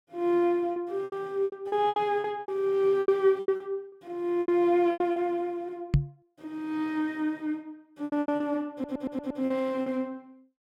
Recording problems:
packet loss; 13% of the sound replaced, filled with repeated pitch periods
microphone bump; at 6 s; peak +9 dB vs average level
stutter; at 8.5 s

